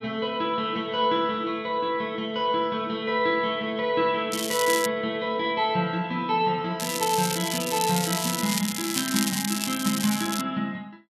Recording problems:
crackle; at 4.5 s and from 7 to 10 s; loose cable, SNR 3 dB

